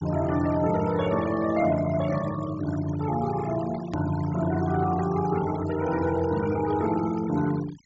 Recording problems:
treble missing; nothing above 8 kHz
denoising artefacts; signal-to-artefact ratio 15 dB
hard cut with a click; at 4 s

